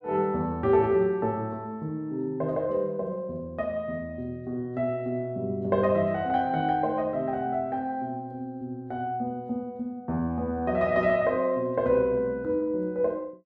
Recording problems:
none

